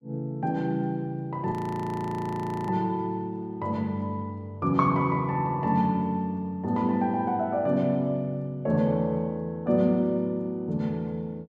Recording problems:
frozen audio; at 1.5 s for 1 s

